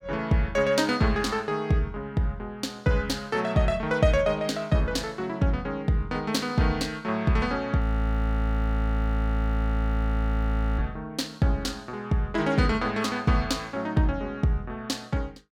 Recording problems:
audio freezing; at 8 s for 3 s

